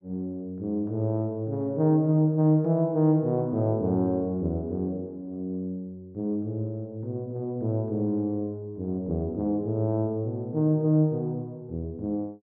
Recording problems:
none

